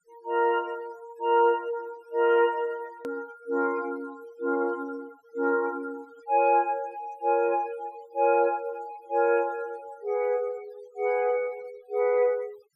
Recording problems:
noise reduction artefacts; signal-to-artefact ratio 25 dB
hard cut with a click; at 3 s

